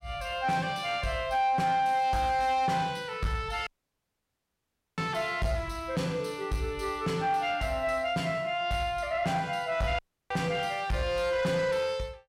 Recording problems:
distorted audio; soft clipping, signal-to-distortion ratio 11 dB
audio cutting out; at 3.5 s for 1.5 s and at 10 s

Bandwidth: 16.5 kHz